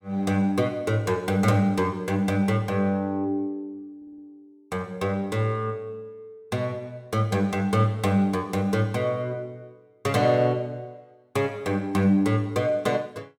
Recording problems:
audio stuttering; at 4 s

